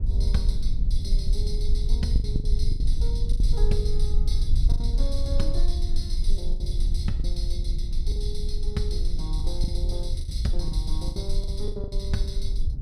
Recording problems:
low-frequency rumble; below 52 Hz, strongest tone 20 Hz, SNR -8 dB
lost packets; 8% of the sound replaced, filled with the last packet

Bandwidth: 15.5 kHz